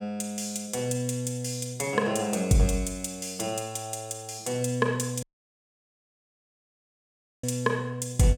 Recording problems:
audio cutting out; at 5 s for 2 s

